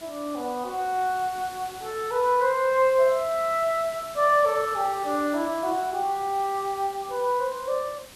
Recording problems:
hiss; slope -1 dB per octave, SNR 18 dB

